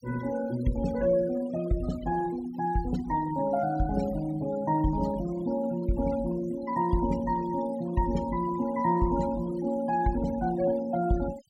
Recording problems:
noise reduction artefacts; signal-to-artefact ratio 17 dB

